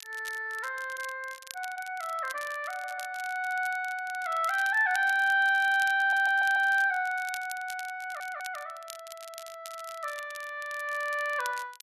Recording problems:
crackle; vinyl, SNR 18 dB
audio stuttering; at 3 s, at 6 s and at 8 s

